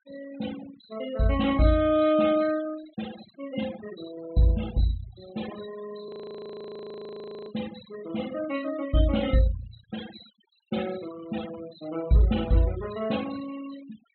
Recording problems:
treble missing; nothing above 4 kHz
denoising artefacts; signal-to-artefact ratio 15 dB
frozen audio; at 6 s for 1.5 s

